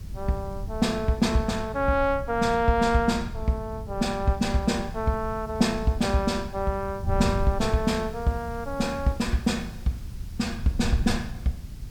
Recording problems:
background hiss; slope -1 dB per octave, SNR 27 dB
wind noise; below 110 Hz, SNR 10 dB

